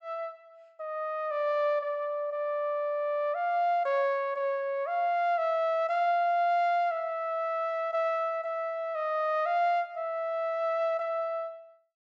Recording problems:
treble cut off; nothing above 8 kHz

